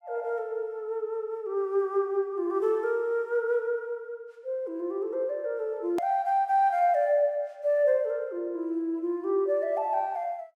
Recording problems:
hard cut with a click; at 6 s

